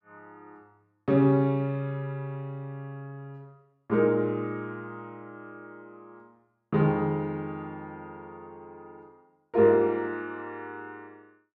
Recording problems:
none

